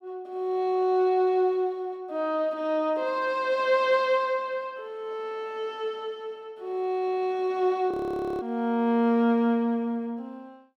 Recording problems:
audio freezing; at 8 s for 0.5 s

